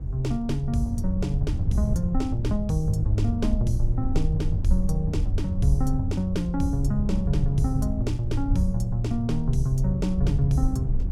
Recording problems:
low-frequency rumble; below 74 Hz, SNR 3 dB
wind on the microphone; below 120 Hz, SNR 8 dB

